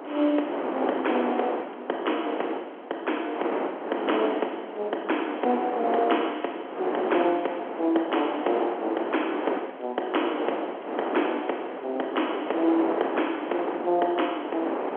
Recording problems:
phone line; 260 Hz to 3.3 kHz, G.711
wind noise; below 900 Hz, SNR 4 dB

